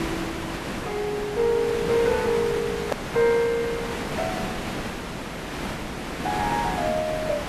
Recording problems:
background hiss; slope -5 dB per octave, SNR 5 dB
click at an edit; at 3 s

